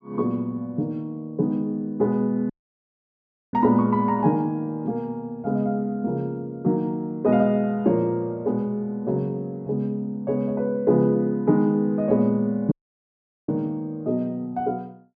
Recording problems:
audio cutting out; at 2.5 s for 1 s and at 13 s for 1 s

